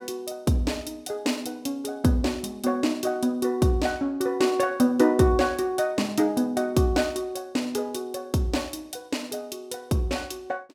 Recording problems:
none

